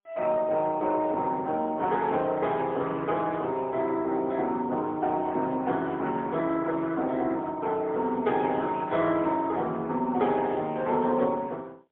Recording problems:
phone line; 190 Hz to 3.4 kHz, AMR-NB, then MP3

